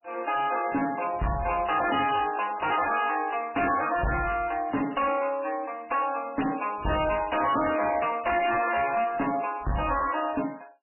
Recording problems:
codec artefacts; MP3, log-spectral distance 6 dB, nothing above 2.9 kHz
distorted audio; hard clipping, uneven, signal-to-distortion ratio 6 dB

